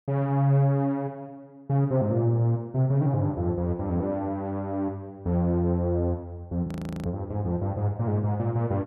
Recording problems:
frozen audio; at 6.5 s

